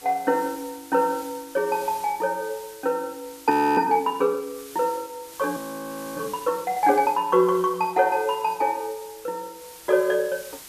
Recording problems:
hiss; slope 0 dB per octave, SNR 18 dB
frozen audio; at 3.5 s and at 5.5 s for 0.5 s

